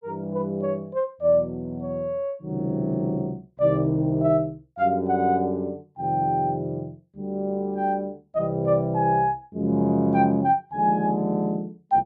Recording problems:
none

